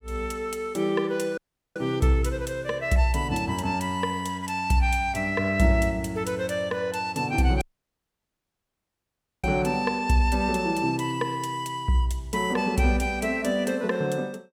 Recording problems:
dropout; at 1.5 s and at 7.5 s for 2 s

